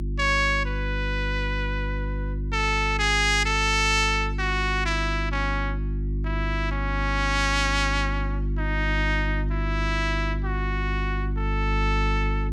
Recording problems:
electrical hum; 50 Hz, harmonics up to 350 Hz, SNR 3 dB

